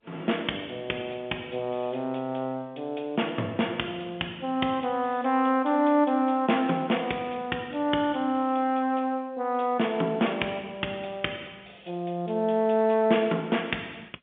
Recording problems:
phone line; 170 Hz to 3.5 kHz, G.711

